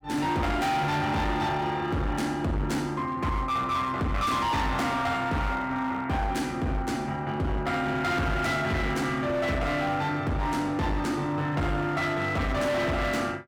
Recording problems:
distortion; hard clipping, signal-to-distortion ratio 8 dB

